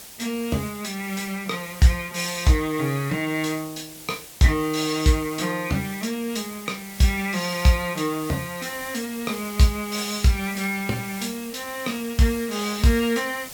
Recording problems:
background hiss; SNR 14 dB

